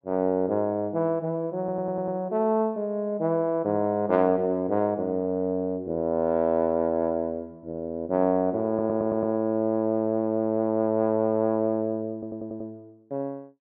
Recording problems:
stutter; at 1.5 s, at 8.5 s and at 12 s

